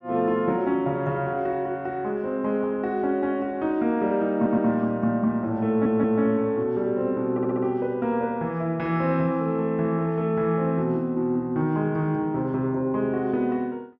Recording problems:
audio stuttering; at 4.5 s, at 5.5 s and at 7.5 s

